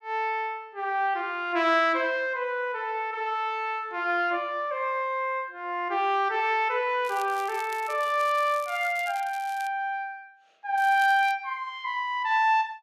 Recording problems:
crackle; from 7 to 9.5 s and at 11 s; loose cable, SNR 20 dB

